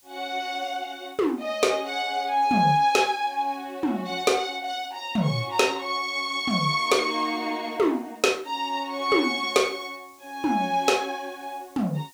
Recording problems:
background hiss; SNR 30 dB

